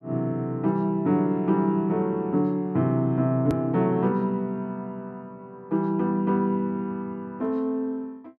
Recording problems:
hard cut with a click; at 3.5 s

